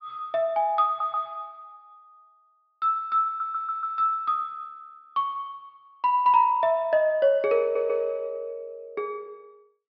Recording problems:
treble missing; nothing above 5.5 kHz
stutter; at 1 s, at 3.5 s and at 7.5 s

